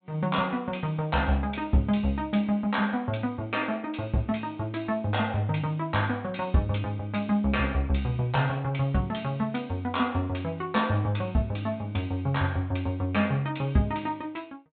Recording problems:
treble missing; nothing above 4 kHz

